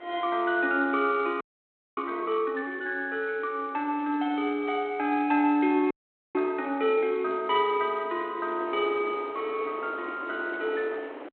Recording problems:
telephone audio; 240 Hz to 3.4 kHz, G.726
wind on the microphone; below 940 Hz, SNR 17 dB
frozen audio; at 1.5 s for 0.5 s and at 6 s

